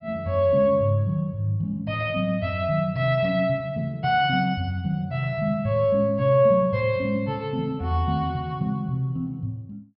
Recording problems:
treble missing; nothing above 5.5 kHz

